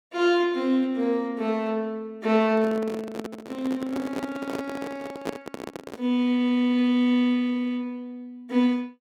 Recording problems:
microphone handling noise; from 2.5 to 6 s; peak -2 dB vs average level

